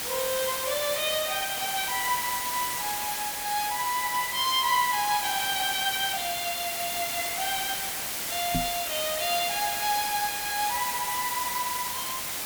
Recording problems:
background hiss; slope 0 dB per octave, SNR 1 dB
microphone thump; at 8.5 s; peak +2 dB vs average level

